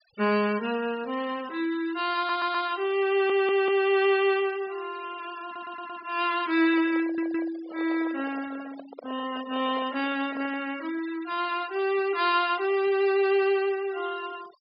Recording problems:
treble missing; nothing above 5.3 kHz
denoising artefacts; signal-to-artefact ratio 20 dB
stutter; 4 times, first at 2 s
handling noise; from 6.5 to 11 s; peak -11 dB vs average level

